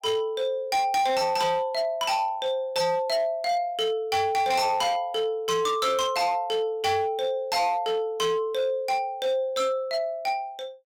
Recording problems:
distorted audio; hard clipping, signal-to-distortion ratio 11 dB

